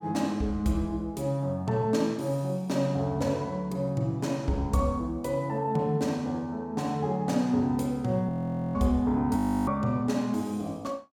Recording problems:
audio freezing; at 8.5 s and at 9.5 s

